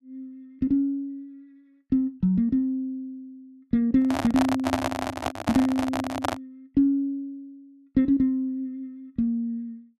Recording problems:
microphone handling noise; from 4 to 6.5 s; peak +4 dB vs average level

